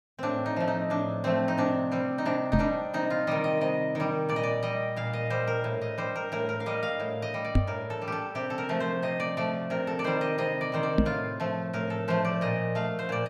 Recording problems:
knock on the microphone; at 2.5 s, at 7.5 s and at 11 s; peak +9 dB vs average level

